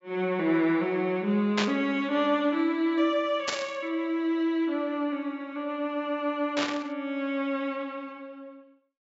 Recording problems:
treble missing; nothing above 8 kHz
static burst; at 1.5 s, at 3.5 s and at 6.5 s; peak +3 dB vs average level

